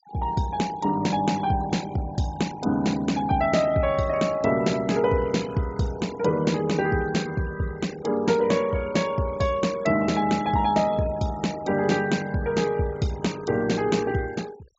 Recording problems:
low-pass filter; nothing above 8 kHz
noise reduction artefacts; signal-to-artefact ratio 19 dB

